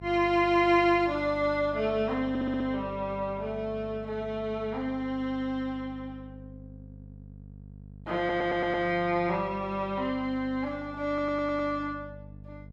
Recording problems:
electrical hum; 50 Hz, harmonics up to 500 Hz, SNR 17 dB
audio stuttering; at 2.5 s, at 8 s and at 11 s

